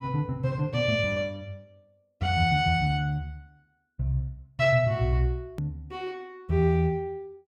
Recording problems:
click at an edit; at 5.5 s

